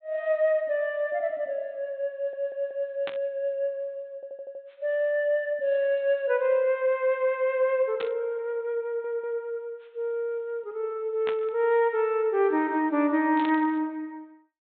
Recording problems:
treble missing; nothing above 4 kHz
stutter; at 2 s, at 4 s and at 9 s
burst of static; 4 times, first at 3 s; peak -5 dB vs average level

